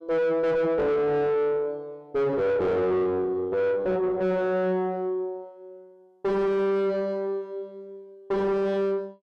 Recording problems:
distorted audio; soft clipping, signal-to-distortion ratio 6 dB

